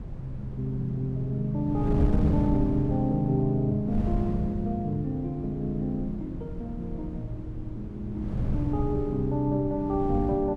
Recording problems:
wind on the microphone; below 170 Hz, SNR 5 dB

